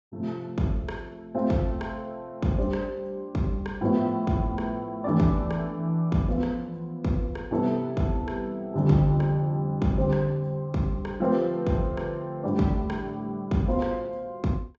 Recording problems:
treble cut off; nothing above 8 kHz

